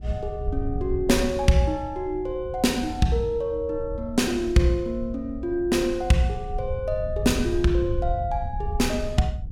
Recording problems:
wind noise; below 86 Hz, SNR 9 dB

